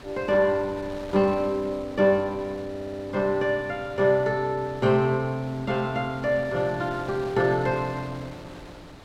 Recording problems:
wind on the microphone; below 1.5 kHz, SNR 18 dB
audio stuttering; at 2.5 s

